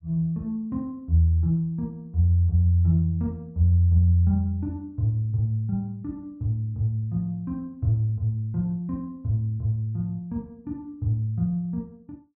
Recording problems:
none

